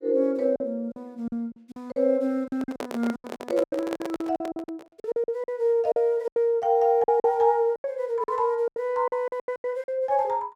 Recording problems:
lost packets; 16% of the sound replaced, filled with silence
microphone handling noise; from 2.5 to 5 s; peak -4 dB vs average level

